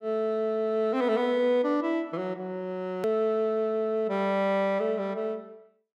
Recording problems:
hard cut with a click; at 3 s

